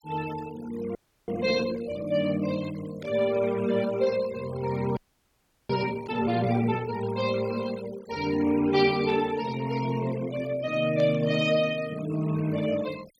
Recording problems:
noise reduction artefacts; signal-to-artefact ratio 18 dB
audio freezing; at 1 s and at 5 s for 0.5 s
static burst; 4 times, first at 3 s; peak -13 dB vs average level

